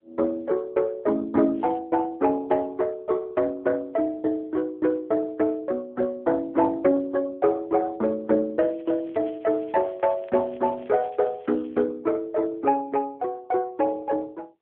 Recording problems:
phone line; 240 Hz to 2.5 kHz, AMR-NB
crackling; at 1.5 s and from 8.5 to 12 s; loose cable, SNR 30 dB

